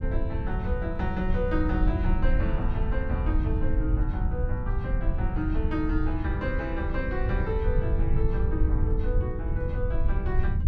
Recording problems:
low-frequency rumble; below 84 Hz, SNR -4 dB

